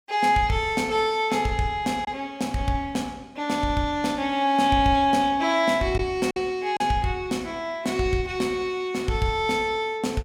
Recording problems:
packet loss; 1.1% of the sound replaced, filled with silence

